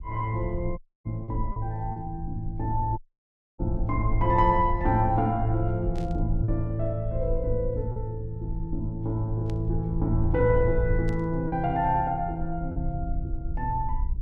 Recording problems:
rumble; below 64 Hz, SNR 6 dB
lost packets; 3% of the sound replaced, filled with repeated pitch periods
dropout; at 1 s and at 3 s for 0.5 s
static burst; at 6 s, at 9.5 s and at 11 s; peak -16 dB vs average level

